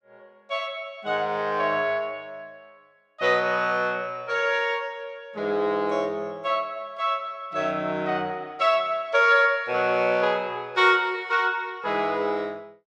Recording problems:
none

